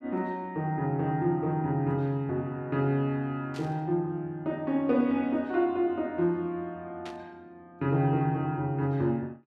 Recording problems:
static burst; at 3.5 s and at 7 s; peak -11 dB vs average level

